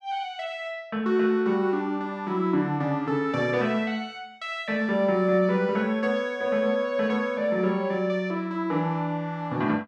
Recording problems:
none

